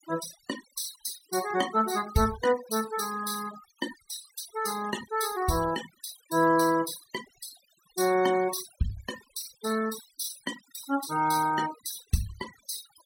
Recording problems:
noise reduction artefacts; signal-to-artefact ratio 12 dB

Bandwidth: 16.5 kHz